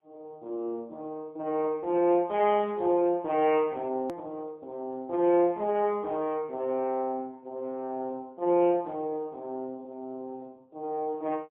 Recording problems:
phone line; 220 Hz to 3.3 kHz, AMR-NB, then MP3
click at an edit; at 4 s

